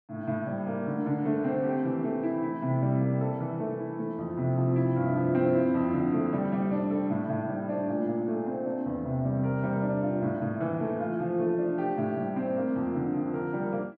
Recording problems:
none

